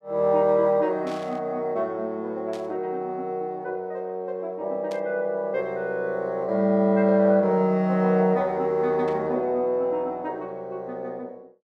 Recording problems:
static burst; 4 times, first at 1 s; peak -14 dB vs average level

